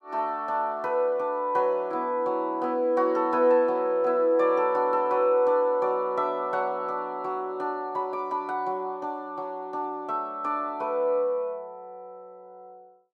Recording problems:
none

